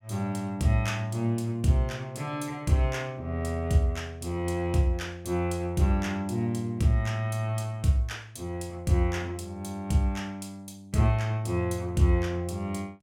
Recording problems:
none

